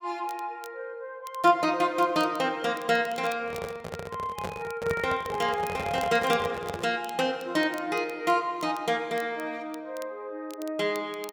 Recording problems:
crackle; vinyl, SNR 22 dB
microphone handling noise; from 3.5 to 7 s; peak -1 dB vs average level

